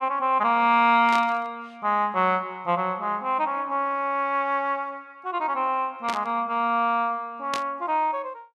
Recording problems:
static burst; at 1 s, at 6 s and at 7.5 s; peak -3 dB vs average level

